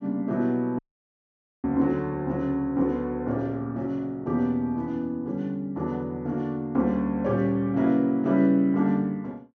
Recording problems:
treble cut off; nothing above 7.9 kHz
dropout; at 1 s for 1 s

